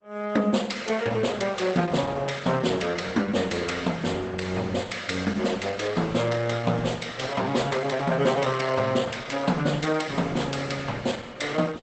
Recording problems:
lossy codec; Opus, log-spectral distance 5 dB, nothing above 8 kHz

